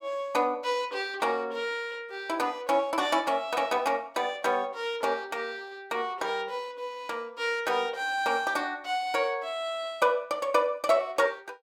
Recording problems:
none

